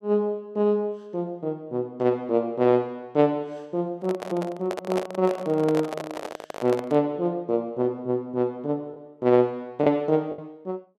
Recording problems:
packet loss; 1% of the sound replaced, filled with the last packet
microphone handling noise; from 4 to 7 s; peak 0 dB vs average level

